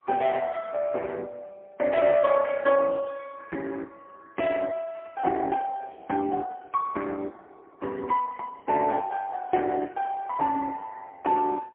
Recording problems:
phone line; 300 Hz to 2.6 kHz, AMR-NB, then MP3

